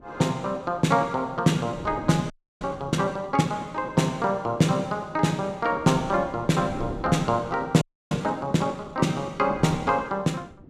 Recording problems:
wind on the microphone; below 350 Hz, SNR 18 dB
frozen audio; at 2.5 s and at 8 s

